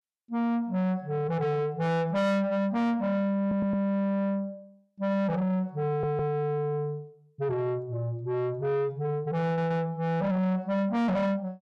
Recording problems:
distortion; soft clipping, signal-to-distortion ratio 7 dB
audio stuttering; at 3.5 s, at 6 s and at 9.5 s

